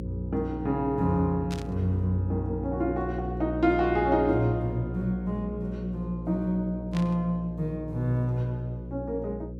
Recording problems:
hum; 60 Hz, harmonics up to 540 Hz, SNR 8 dB
static burst; at 1.5 s and at 7 s; peak -7 dB vs average level

